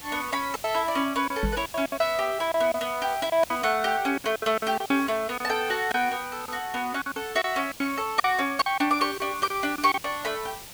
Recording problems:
background hiss; slope 0 dB per octave, SNR 15 dB
lost packets; 10% of the sound replaced, filled with silence
microphone bump; at 1.5 s; peak +1 dB vs average level

